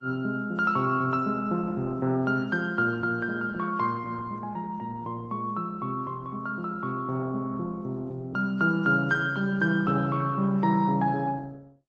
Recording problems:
lossy codec; Opus, then AAC, log-spectral distance 2 dB

